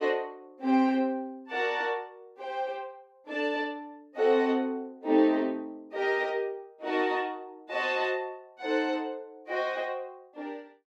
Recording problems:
none

